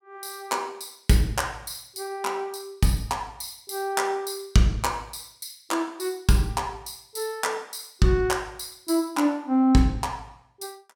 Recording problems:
none

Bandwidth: 17.5 kHz